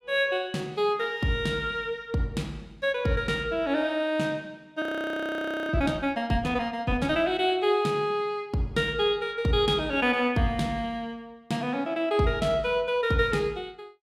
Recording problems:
frozen audio; at 5 s for 1 s

